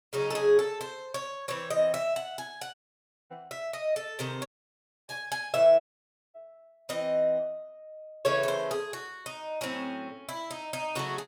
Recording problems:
audio cutting out; at 2.5 s for 0.5 s, at 4.5 s for 0.5 s and at 6 s for 0.5 s

